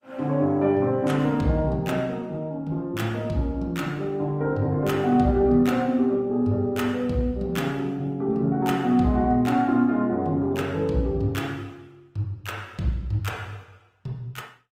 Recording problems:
lossy compression; Opus, log-spectral distance 2 dB, nothing above 18.3 kHz

